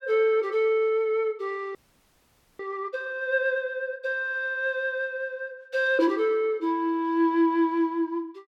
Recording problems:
frozen audio; at 2 s for 1 s

